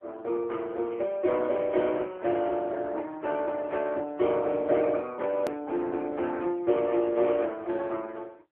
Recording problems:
telephone audio; 260 Hz to 3.8 kHz, AMR-NB
click at an edit; at 5.5 s

